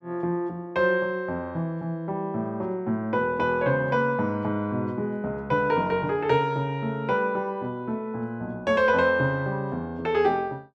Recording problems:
none

